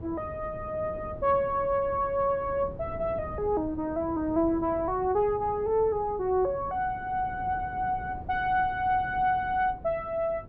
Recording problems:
wind on the microphone; below 300 Hz, SNR 16 dB

